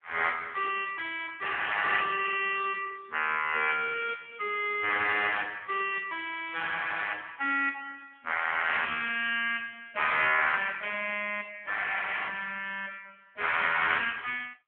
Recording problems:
telephone audio; 300 Hz to 3.3 kHz, AMR-NB

